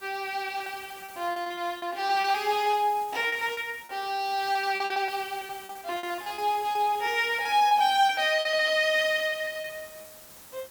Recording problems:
hiss; slope -2 dB per octave, SNR 20 dB
lost packets; 16% of the sound replaced, filled with repeated pitch periods

